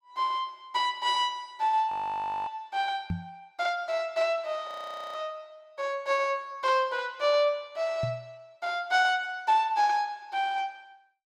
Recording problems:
audio freezing; at 2 s for 0.5 s and at 4.5 s
microphone bump; at 3 s and at 8 s; peak +1 dB vs average level

